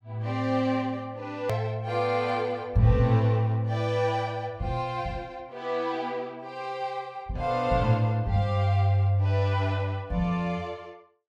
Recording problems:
hard cut with a click; at 1.5 s

